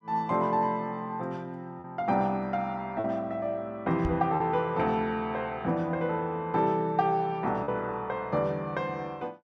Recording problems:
lost packets; 1.7% of the sound replaced, filled with repeated pitch periods
microphone thump; at 4 s; peak +1 dB vs average level

